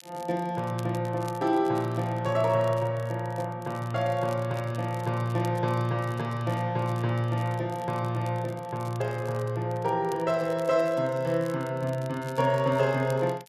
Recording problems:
crackle; vinyl, SNR 24 dB

